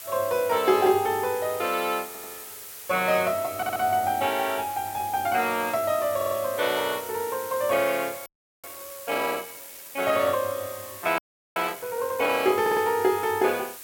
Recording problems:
hiss; slope +1 dB per octave, SNR 13 dB
audio stuttering; 4 times, first at 2 s
frozen audio; at 8.5 s and at 11 s

